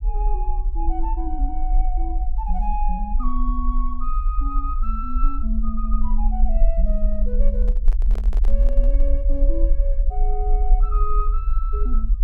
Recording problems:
low-frequency rumble; below 40 Hz, SNR -8 dB
handling noise; from 7.5 to 9 s; peak -5 dB vs average level

